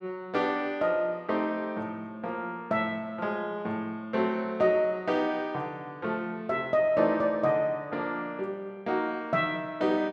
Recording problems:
none

